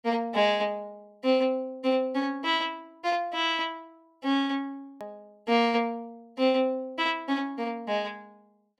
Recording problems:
hard cut with a click; at 5 s

